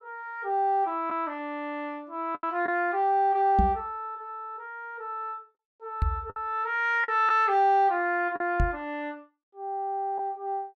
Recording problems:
packet loss; 3% of the sound replaced, filled with the last packet
microphone thump; at 3.5 s, at 6 s and at 8.5 s; peak +5 dB vs average level

